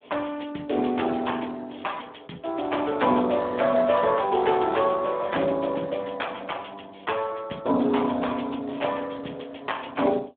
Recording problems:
phone line; 190 Hz to 3.6 kHz, Speex

